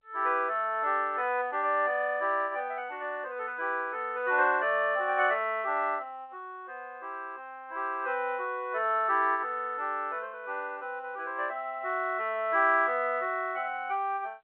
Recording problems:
phone line; 340 Hz to 3.4 kHz, G.711

